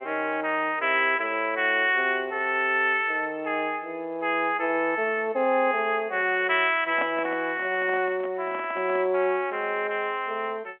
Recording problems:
phone line; 280 Hz to 3.4 kHz, G.711
handling noise; from 7 to 9 s; peak -3 dB vs average level

